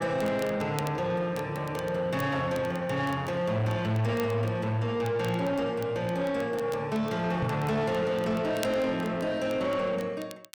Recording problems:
distorted audio; soft clipping, signal-to-distortion ratio 11 dB
crackling; vinyl, SNR 21 dB
microphone bump; at 7.5 s; peak +2 dB vs average level

